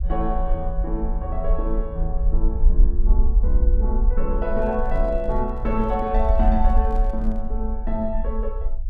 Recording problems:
rumble; below 48 Hz, strongest tone 26 Hz, SNR -3 dB
microphone handling noise; from 4.5 to 7.5 s; peak -9 dB vs average level

